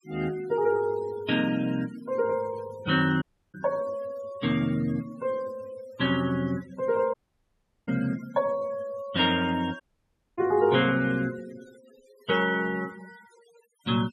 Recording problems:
denoising artefacts; signal-to-artefact ratio 21 dB
dropout; at 3 s, at 7 s for 0.5 s and at 10 s for 0.5 s

